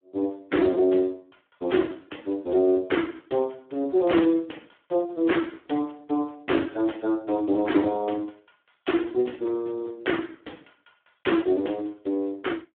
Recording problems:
phone line; 220 Hz to 3.6 kHz, Speex

